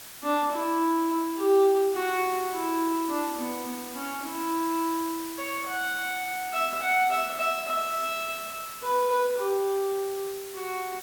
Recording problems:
hiss; slope 0 dB per octave, SNR 12 dB

